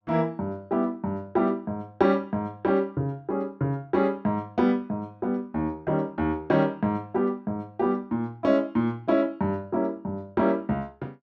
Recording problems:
none

